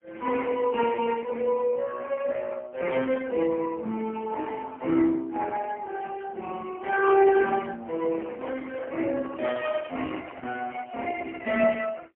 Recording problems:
telephone audio; 260 Hz to 2.8 kHz, AMR-NB, then MP3
microphone handling noise; from 8 to 11 s; peak -9 dB vs average level

